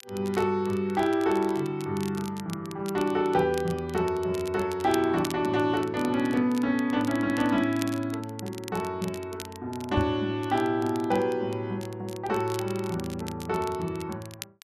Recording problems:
crackling; vinyl, SNR 18 dB
microphone bump; at 10 s; peak +3 dB vs average level

